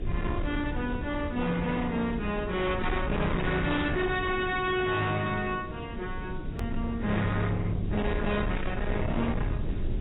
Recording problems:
codec artefacts; AAC, log-spectral distance 3 dB, nothing above 3.8 kHz
distortion; hard clipping, signal-to-distortion ratio 7 dB
hiss; SNR 11 dB
rumble; below 170 Hz, SNR 6 dB
edit click; at 6.5 s

